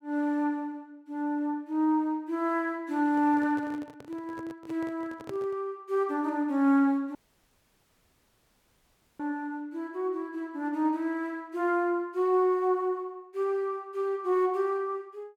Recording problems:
handling noise; from 3 to 5.5 s; peak -8 dB vs average level
dropout; at 7 s for 2 s

